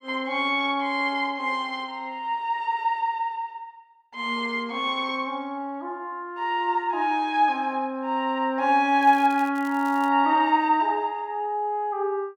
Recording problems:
crackle; from 9 to 10 s; loose cable, SNR 25 dB

